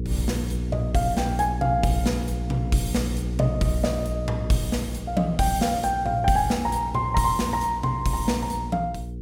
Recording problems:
hum; 60 Hz, harmonics up to 480 Hz, SNR 6 dB

